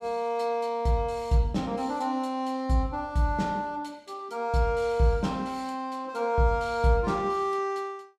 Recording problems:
none

